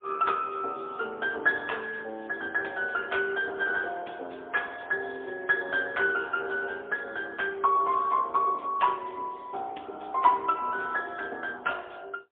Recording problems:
phone line; 300 Hz to 3.4 kHz, AMR-NB, then MP3

